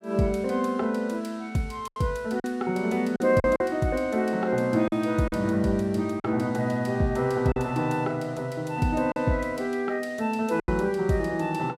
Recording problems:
lost packets; 4% of the sound replaced, filled with silence

